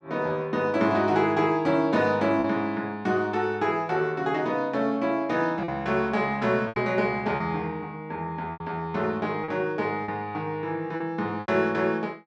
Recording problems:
lost packets; 4% of the sound replaced, filled with repeated pitch periods

